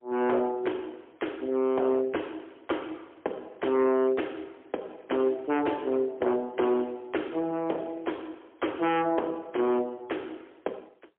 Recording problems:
telephone audio; 320 Hz to 3.3 kHz, AMR-NB, then MP3
distorted audio; hard clipping, signal-to-distortion ratio 8 dB

